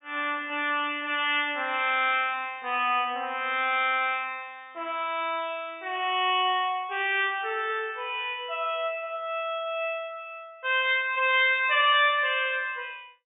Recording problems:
treble cut off; nothing above 3.7 kHz

